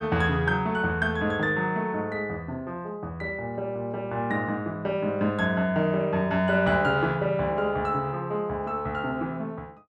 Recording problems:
none

